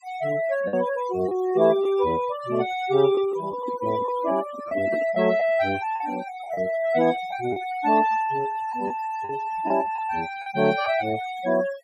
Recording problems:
noise reduction artefacts; signal-to-artefact ratio 16 dB
packet loss; 4% of the sound replaced, filled with the last packet
handling noise; from 3.5 to 5 s; peak -4 dB vs average level

